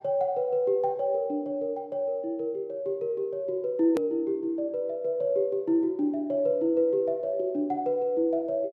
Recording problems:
edit click; at 4 s

